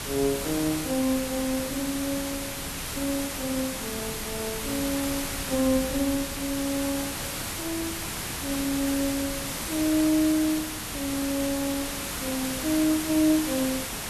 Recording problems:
hiss; slope -1 dB per octave, SNR 3 dB
wind on the microphone; below 170 Hz, SNR 18 dB

